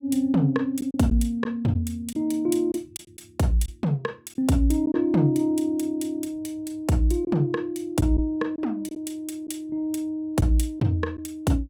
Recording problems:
packet loss; 3% of the sound replaced, filled with silence

